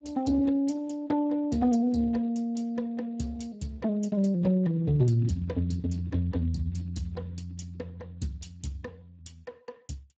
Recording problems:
lossy codec; Speex, log-spectral distance 2 dB, nothing above 7.6 kHz

